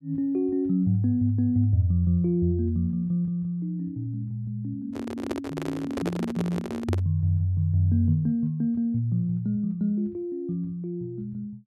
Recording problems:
handling noise; from 5 to 7 s; peak +1 dB vs average level

